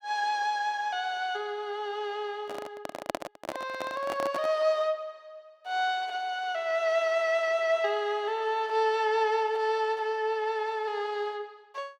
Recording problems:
microphone handling noise; from 2.5 to 4.5 s; peak +1 dB vs average level

